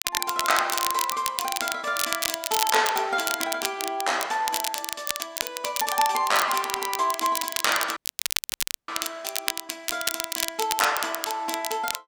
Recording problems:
crackle; vinyl, SNR 2 dB
audio cutting out; at 8 s for 1 s

